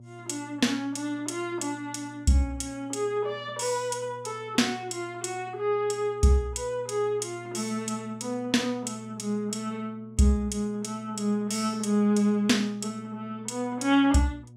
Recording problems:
hum; 60 Hz, harmonics up to 600 Hz, SNR 20 dB

